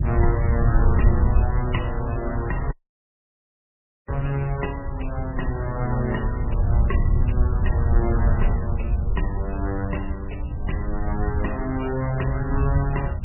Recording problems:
codec artefacts; MP3, log-spectral distance 4 dB, nothing above 2.9 kHz
wind on the microphone; below 90 Hz, SNR -3 dB
audio cutting out; at 2.5 s for 1.5 s

